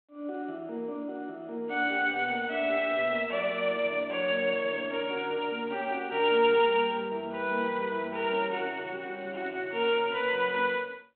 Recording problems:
phone line; 260 Hz to 3.4 kHz, G.726

